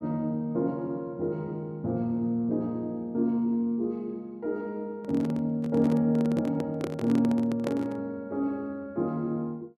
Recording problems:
handling noise; from 5 to 8 s; peak 0 dB vs average level

